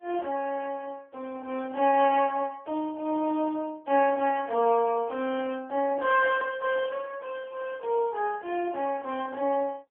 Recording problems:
telephone audio; 280 Hz to 3.2 kHz, AMR-NB

